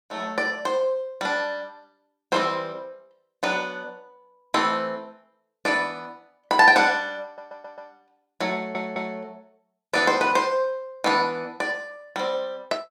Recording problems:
audio stuttering; at 7.5 s and at 8.5 s

